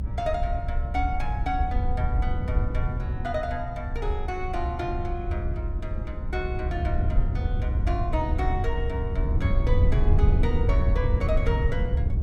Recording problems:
low-frequency rumble; below 70 Hz, SNR 3 dB
wind on the microphone; below 94 Hz, SNR -4 dB

